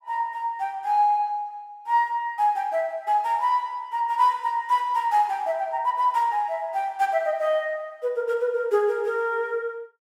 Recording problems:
none

